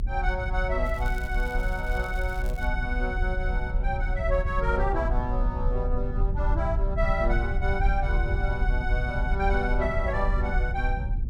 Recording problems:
low-frequency rumble; below 60 Hz, strongest tone 34 Hz, SNR -1 dB
crackling; from 1 to 2.5 s; loose cable, SNR 21 dB

